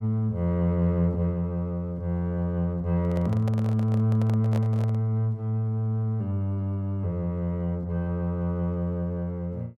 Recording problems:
microphone handling noise; from 3 to 5 s; peak -6 dB vs average level

